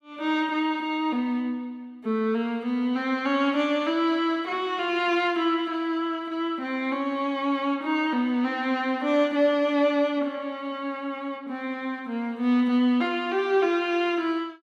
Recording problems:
none

